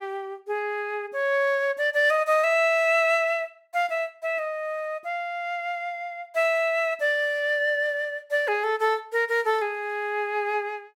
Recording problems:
none

